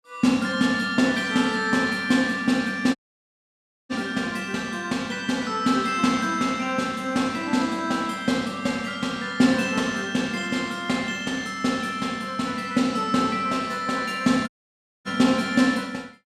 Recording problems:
dropout; at 3 s for 1 s and at 14 s for 0.5 s

